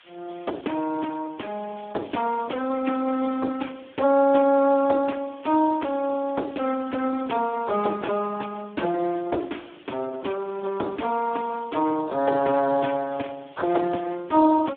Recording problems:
telephone audio; 240 Hz to 3.5 kHz, Speex
background hiss; SNR 27 dB

